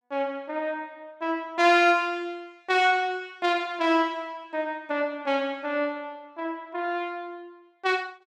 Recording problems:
none

